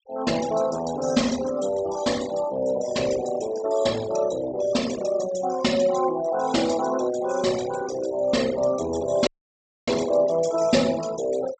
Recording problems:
treble missing; nothing above 8 kHz
denoising artefacts; signal-to-artefact ratio 15 dB
dropout; at 9.5 s for 0.5 s

